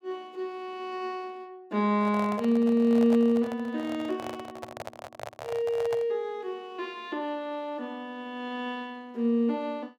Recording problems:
handling noise; from 2 to 6 s; peak -5 dB vs average level

